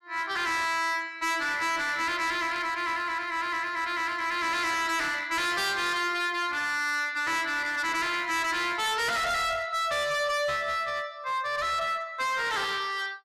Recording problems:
distortion; hard clipping, uneven, signal-to-distortion ratio 7 dB
static burst; at 2.5 s; peak -15 dB vs average level

